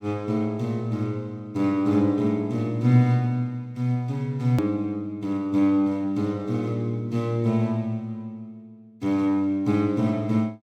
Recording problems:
click at an edit; at 4.5 s

